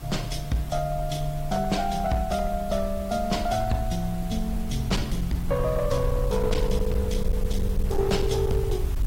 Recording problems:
codec artefacts; AAC, log-spectral distance 3 dB, nothing above 14.7 kHz
distortion; hard clipping, uneven, signal-to-distortion ratio 12 dB
background hiss; slope -4 dB per octave, SNR 14 dB
rumble; below 70 Hz, SNR 5 dB

